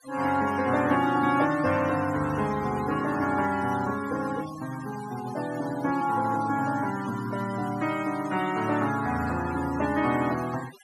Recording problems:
noise reduction artefacts; signal-to-artefact ratio 15 dB

